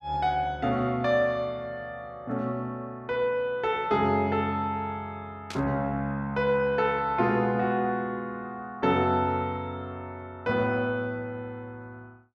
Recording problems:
burst of static; at 5.5 s; peak -6 dB vs average level

